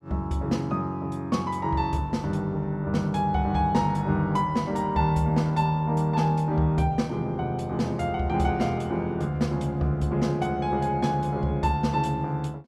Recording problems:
none

